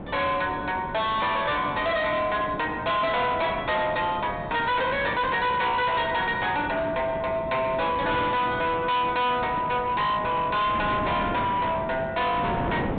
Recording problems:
treble cut off; nothing above 4 kHz
distortion; hard clipping, signal-to-distortion ratio 8 dB
wind noise; below 670 Hz, SNR 11 dB

